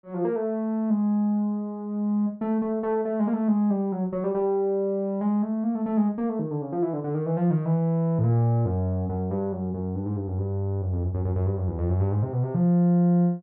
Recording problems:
low-pass filter; nothing above 5.5 kHz

